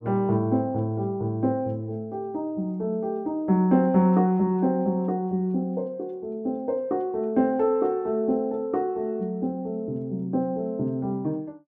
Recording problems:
none

